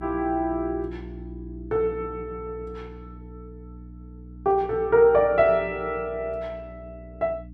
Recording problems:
hum; 60 Hz, harmonics up to 300 Hz, SNR 18 dB

